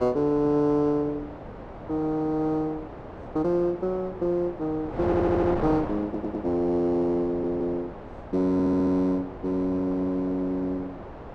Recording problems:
wind noise; below 820 Hz, SNR 11 dB
audio stuttering; 4 times, first at 5 s

